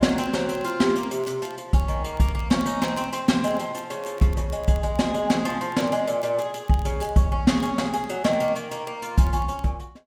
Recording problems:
crackle; vinyl, SNR 27 dB

